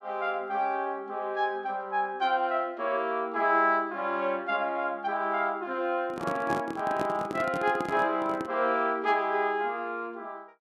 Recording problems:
microphone handling noise; from 6 to 8.5 s; peak -1 dB vs average level

